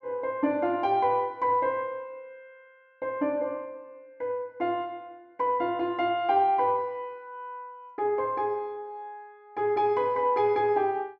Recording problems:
none

